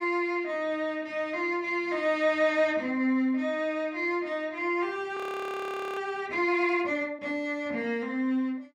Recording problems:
frozen audio; at 5 s for 1 s

